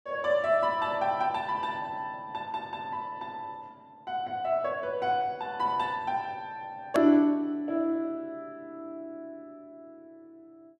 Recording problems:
edit click; at 7 s

